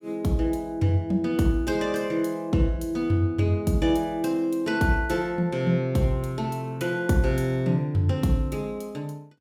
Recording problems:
none

